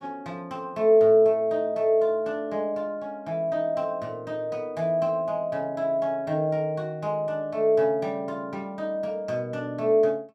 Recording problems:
none

